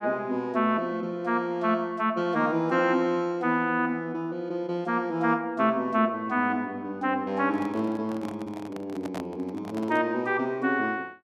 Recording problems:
microphone handling noise; from 7.5 to 10 s; peak -6 dB vs average level

